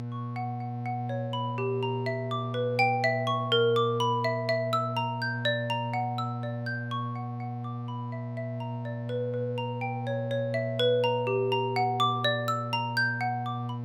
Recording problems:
hum; 60 Hz, harmonics up to 840 Hz, SNR 6 dB

